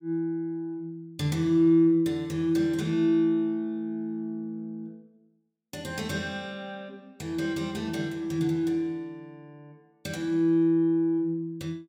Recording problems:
none

